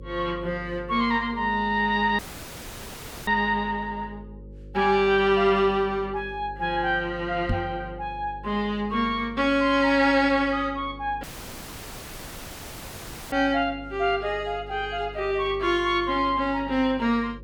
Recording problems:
hum; 50 Hz, harmonics up to 550 Hz, SNR 19 dB
audio cutting out; at 2 s for 1 s and at 11 s for 2 s
knock on the microphone; at 7.5 s; peak +1 dB vs average level

